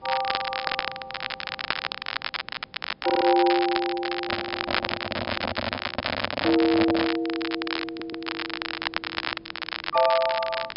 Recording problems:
treble cut off; nothing above 5.5 kHz
hiss; slope -6 dB per octave, SNR 28 dB
crackle; vinyl, SNR 4 dB
audio stuttering; at 3 s and at 8 s
microphone handling noise; from 4 to 7 s; peak +2 dB vs average level

